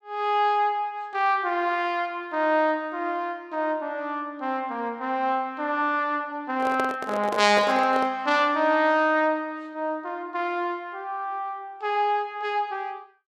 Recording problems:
handling noise; from 6.5 to 8 s; peak -1 dB vs average level

